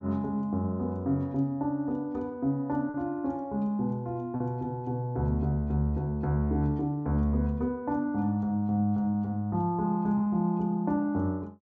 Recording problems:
treble cut off; nothing above 8 kHz
packet loss; 1.6% of the sound replaced, filled with repeated pitch periods

